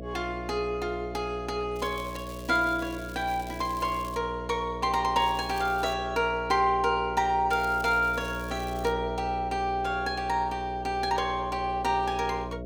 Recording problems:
hum; 60 Hz, harmonics up to 660 Hz, SNR 11 dB
crackling; from 2 to 4 s, at 5 s and from 7.5 to 9 s; loose cable, SNR 20 dB

